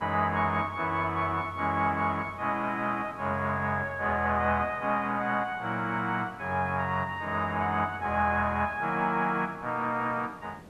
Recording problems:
background hiss; slope -7 dB per octave, SNR 22 dB

